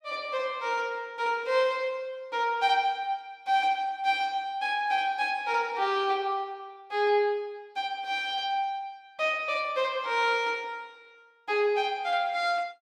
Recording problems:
none

